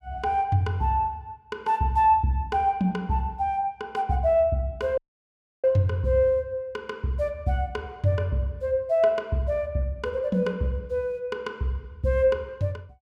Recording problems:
audio cutting out; at 5 s for 0.5 s

